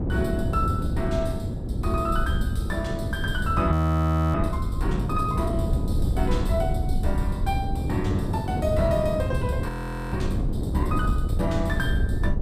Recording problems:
rumble; below 78 Hz, SNR 4 dB
wind noise; below 240 Hz, SNR 1 dB
frozen audio; at 3.5 s for 0.5 s and at 9.5 s

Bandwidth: 15 kHz